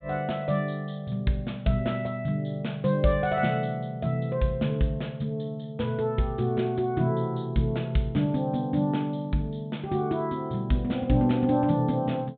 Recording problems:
treble cut off; nothing above 4 kHz

